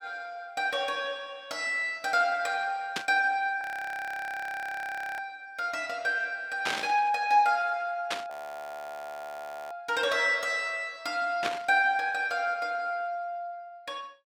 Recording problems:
static burst; 4 times, first at 3 s; peak +3 dB vs average level
audio freezing; at 3.5 s for 1.5 s and at 8.5 s for 1.5 s

